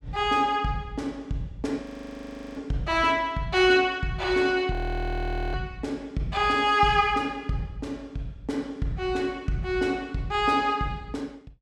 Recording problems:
frozen audio; at 2 s for 0.5 s and at 4.5 s for 1 s

